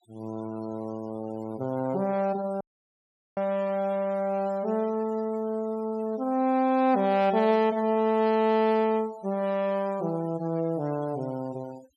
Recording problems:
noise reduction artefacts; signal-to-artefact ratio 23 dB
audio cutting out; at 2.5 s for 1 s

